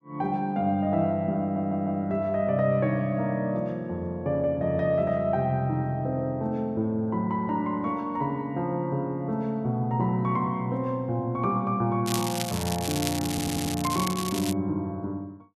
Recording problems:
audio stuttering; at 1.5 s and at 13 s
crackling; from 12 to 15 s; loose cable, SNR 6 dB

